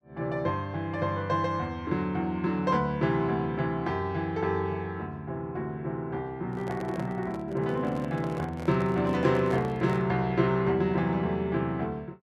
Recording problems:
microphone handling noise; from 6.5 to 10 s; peak -7 dB vs average level

